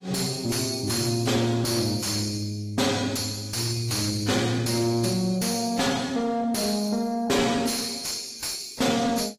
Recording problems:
lossy codec; AAC, log-spectral distance 5 dB, nothing above 14.7 kHz
distortion; soft clipping, signal-to-distortion ratio 8 dB

